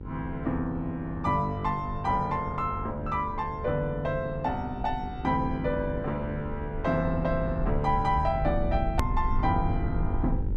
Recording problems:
mains hum; 50 Hz, harmonics up to 1 kHz, SNR 13 dB
rumble; below 84 Hz, SNR 7 dB
hard cut with a click; at 9 s

